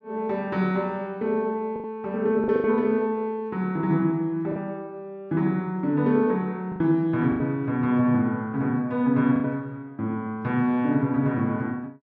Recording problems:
lost packets; 4% of the sound replaced, filled with the last packet

